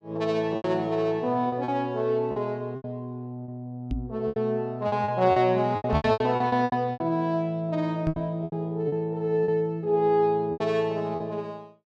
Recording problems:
lost packets; 12% of the sound replaced, filled with repeated pitch periods
microphone thump; at 4 s, at 6 s and at 8 s; peak +1 dB vs average level

